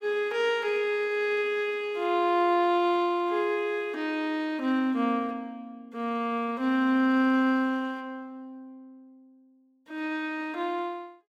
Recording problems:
none

